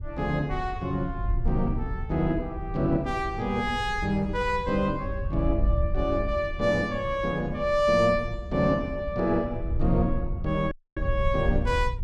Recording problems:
wind noise; below 78 Hz, SNR 6 dB
audio cutting out; at 11 s

